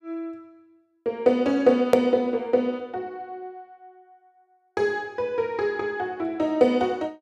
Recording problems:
click at an edit; at 2 s

